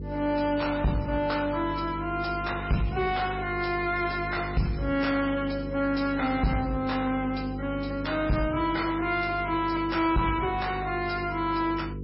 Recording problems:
lossy codec; MP3, log-spectral distance 4 dB, nothing above 5.5 kHz
distorted audio; soft clipping, signal-to-distortion ratio 7 dB
hum; 50 Hz, harmonics up to 500 Hz, SNR 9 dB

